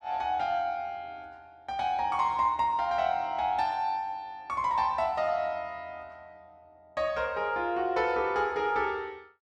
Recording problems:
none

